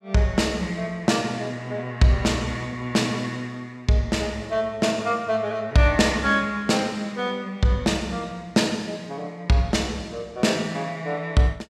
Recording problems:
none

